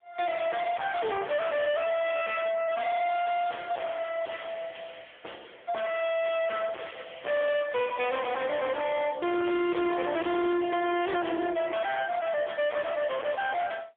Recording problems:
telephone audio; 280 Hz to 3.4 kHz, AMR-NB, then MP3
distortion; hard clipping, signal-to-distortion ratio 5 dB

